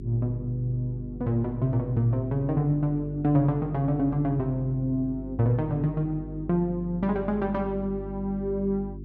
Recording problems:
hum; 50 Hz, harmonics up to 400 Hz, SNR 12 dB

